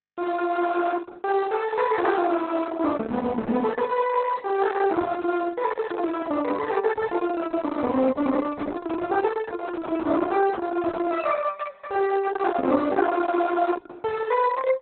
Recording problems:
lossy codec; Opus, log-spectral distance 3 dB, nothing above 4 kHz

